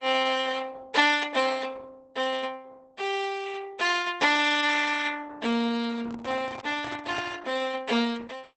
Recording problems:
codec artefacts; Opus, log-spectral distance 4 dB, nothing above 8.2 kHz
handling noise; from 6 to 7.5 s; peak -7 dB vs average level

